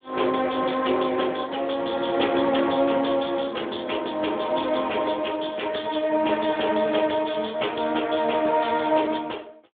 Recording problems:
phone line; 280 Hz to 3.6 kHz, Speex

